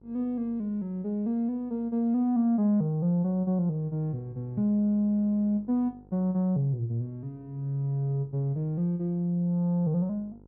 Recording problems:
hum; 50 Hz, harmonics up to 950 Hz, SNR 28 dB

